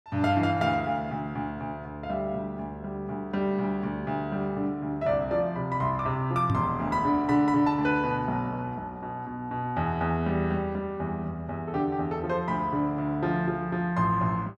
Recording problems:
knock on the microphone; at 6.5 s; peak +4 dB vs average level

